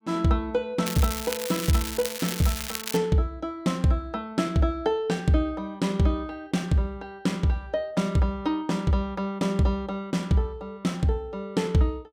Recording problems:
crackle; from 1 to 3 s; loose cable, SNR 6 dB

